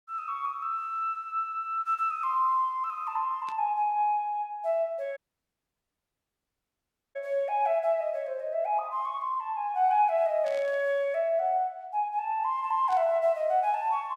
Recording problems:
burst of static; at 3.5 s, at 10 s and at 13 s; peak -14 dB vs average level
dropout; at 5 s for 2 s

